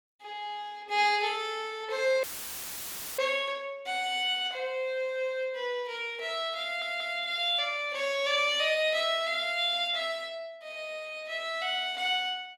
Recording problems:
dropout; at 2 s for 1 s; filled with static
audio stuttering; at 6.5 s

